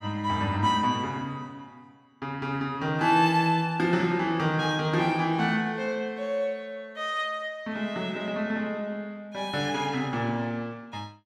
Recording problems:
none

